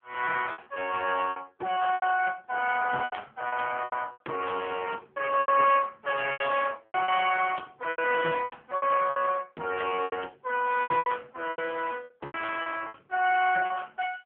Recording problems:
phone line; 320 Hz to 3.2 kHz, AMR-NB
packet loss; 12% of the sound replaced, filled with repeated pitch periods

